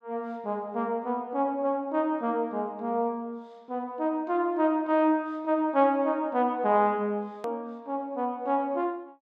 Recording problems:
hard cut with a click; at 7.5 s

